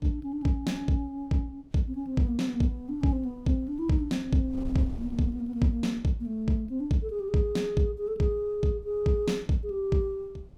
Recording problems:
wind noise; below 96 Hz, SNR 20 dB

